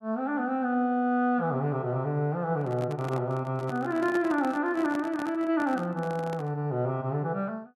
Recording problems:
handling noise; from 2.5 to 6.5 s; peak -4 dB vs average level

